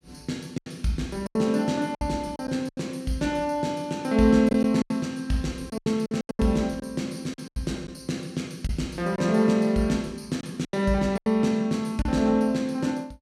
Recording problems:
lost packets; 9% of the sound replaced, filled with silence

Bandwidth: 15.5 kHz